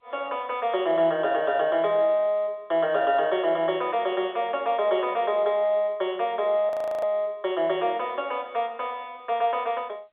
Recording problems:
phone line; 280 Hz to 3.5 kHz, G.711
frozen audio; at 6.5 s

